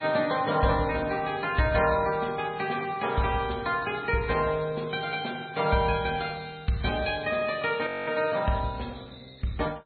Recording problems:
treble cut off; nothing above 4.1 kHz
lossy compression; MP3, log-spectral distance 6 dB
frozen audio; at 8 s

